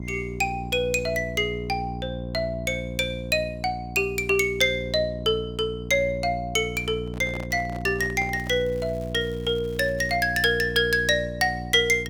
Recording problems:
hum; 60 Hz, harmonics up to 720 Hz, SNR 10 dB
microphone handling noise; from 7 to 8.5 s; peak -10 dB vs average level
crackling; from 8.5 to 10 s; loose cable, SNR 28 dB

